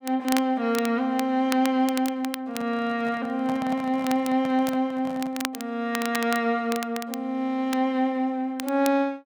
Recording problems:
crackle; vinyl, SNR 12 dB
microphone handling noise; from 2.5 to 5.5 s; peak -7 dB vs average level

